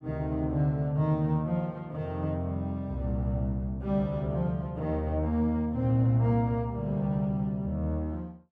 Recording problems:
none

